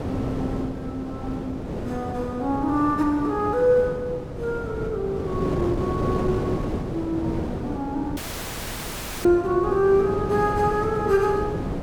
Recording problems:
wind on the microphone; below 460 Hz, SNR 5 dB
audio cutting out; at 8 s for 1 s

